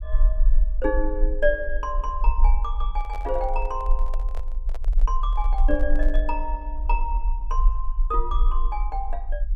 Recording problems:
low-frequency rumble; below 40 Hz, strongest tone 20 Hz, SNR -3 dB
microphone handling noise; from 3 to 6.5 s; peak -7 dB vs average level

